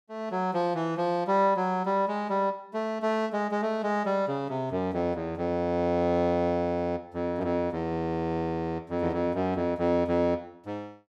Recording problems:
none

